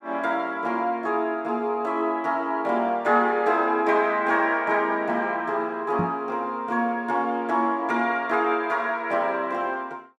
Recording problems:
microphone thump; at 6 s; peak 0 dB vs average level

